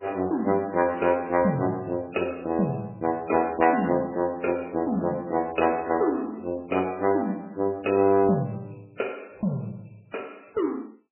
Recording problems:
lossy compression; MP3, log-spectral distance 6 dB, nothing above 2.6 kHz

